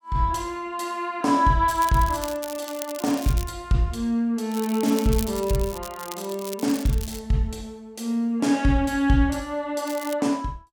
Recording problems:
crackling; from 1.5 to 3.5 s, from 4.5 to 7 s and at 10 s; loose cable, SNR 13 dB

